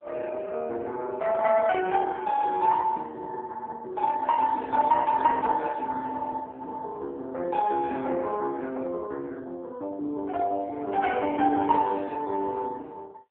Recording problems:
phone line; 260 Hz to 2.8 kHz, AMR-NB

